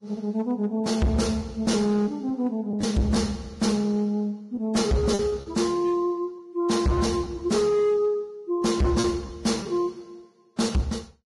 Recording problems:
lossy compression; Vorbis, log-spectral distance 2 dB, nothing above 11 kHz
distorted audio; hard clipping, signal-to-distortion ratio 6 dB
lost packets; 4% of the sound replaced, filled with repeated pitch periods

